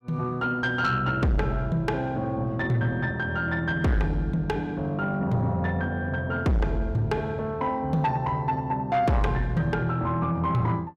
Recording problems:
distorted audio; soft clipping, signal-to-distortion ratio 8 dB

